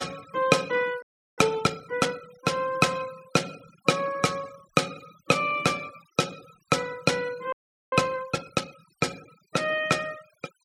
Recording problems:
denoising artefacts; signal-to-artefact ratio 20 dB
frozen audio; at 1 s and at 7.5 s

